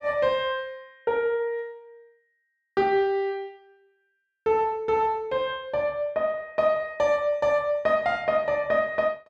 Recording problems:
none

